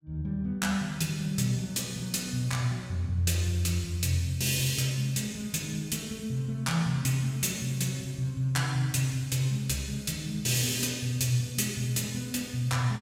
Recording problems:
none

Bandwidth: 16 kHz